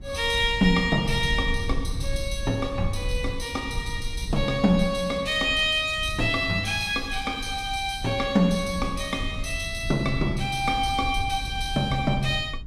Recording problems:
low-frequency rumble; below 80 Hz, SNR 10 dB

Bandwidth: 15 kHz